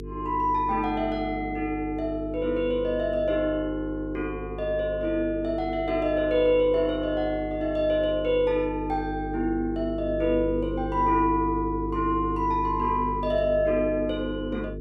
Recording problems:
hum; 50 Hz, harmonics up to 450 Hz, SNR 10 dB

